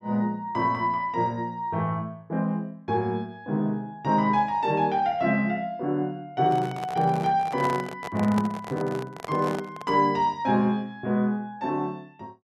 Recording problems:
handling noise; from 6.5 to 10 s; peak -3 dB vs average level

